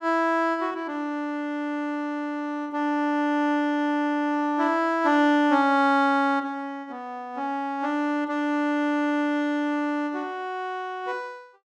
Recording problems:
none

